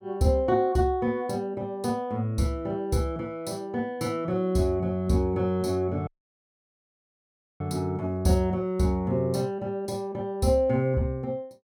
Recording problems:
dropout; at 6 s for 1.5 s

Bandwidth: 17 kHz